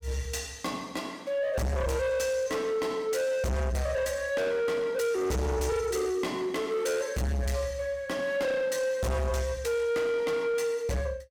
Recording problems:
distorted audio; soft clipping, signal-to-distortion ratio 7 dB

